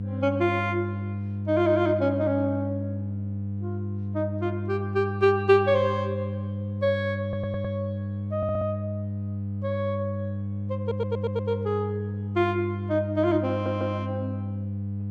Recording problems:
hum; 50 Hz, harmonics up to 500 Hz, SNR 4 dB
audio stuttering; 4 times, first at 7 s

